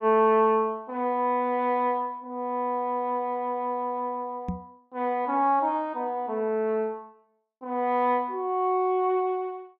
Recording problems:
knock on the microphone; at 4.5 s; peak -1 dB vs average level

